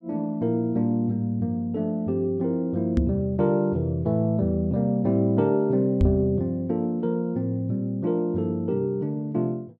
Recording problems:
knock on the microphone; at 3 s and at 6 s; peak +5 dB vs average level

